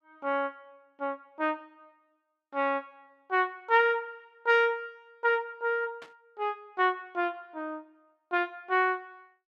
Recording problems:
static burst; at 6 s; peak -15 dB vs average level

